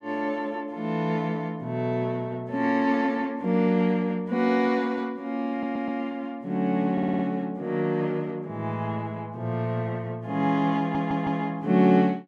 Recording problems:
audio stuttering; at 5.5 s, at 7 s and at 11 s

